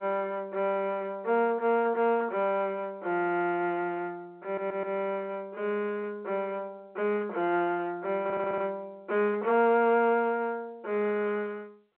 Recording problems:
telephone audio; 300 Hz to 3.5 kHz, G.711
audio stuttering; at 4.5 s and at 8 s

